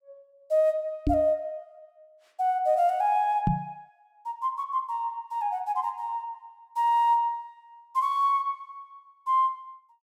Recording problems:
microphone thump; at 1 s and at 3.5 s; peak +4 dB vs average level

